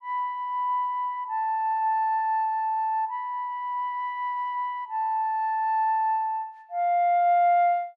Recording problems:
none

